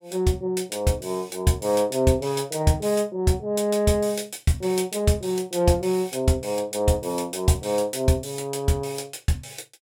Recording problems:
none

